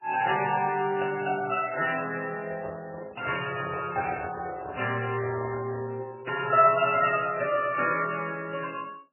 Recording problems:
codec artefacts; MP3, then MP3, log-spectral distance 7 dB, nothing above 2.8 kHz
microphone handling noise; from 2.5 to 6 s; peak -4 dB vs average level

